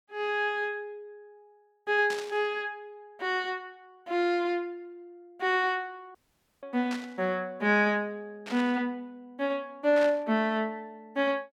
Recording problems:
static burst; 4 times, first at 2 s; peak -6 dB vs average level
audio cutting out; at 6 s

